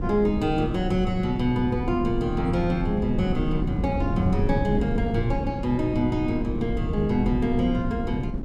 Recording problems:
wind on the microphone; below 200 Hz, SNR 4 dB

